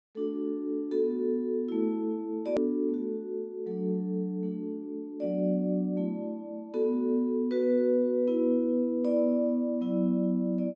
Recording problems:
low-pass filter; nothing above 8 kHz
hard cut with a click; at 2.5 s

